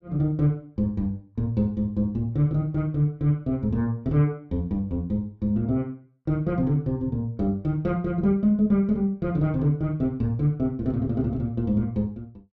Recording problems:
none

